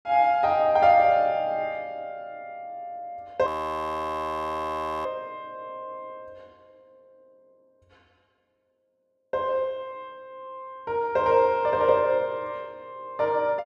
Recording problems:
audio freezing; at 3.5 s for 1.5 s

